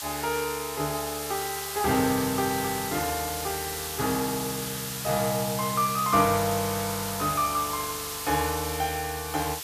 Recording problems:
background hiss; SNR 4 dB

